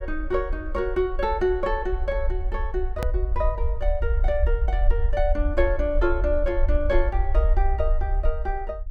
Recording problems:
low-frequency rumble; below 56 Hz, SNR 0 dB
click at an edit; at 3 s

